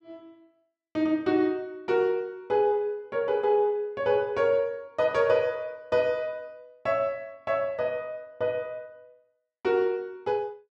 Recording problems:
none

